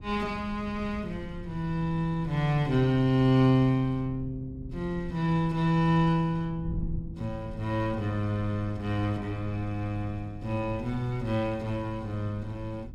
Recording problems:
wind on the microphone; below 120 Hz, SNR 14 dB

